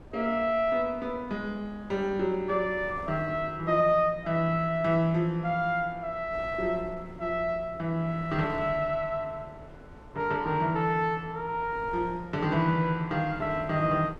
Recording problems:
wind on the microphone; below 500 Hz, SNR 19 dB

